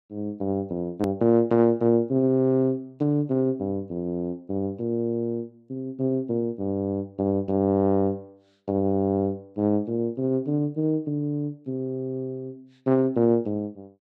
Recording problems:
hard cut with a click; at 1 s

